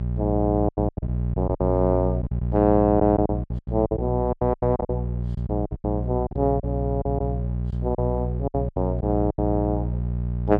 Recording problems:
hum; 60 Hz, harmonics up to 600 Hz, SNR 3 dB
lost packets; 14% of the sound replaced, filled with silence

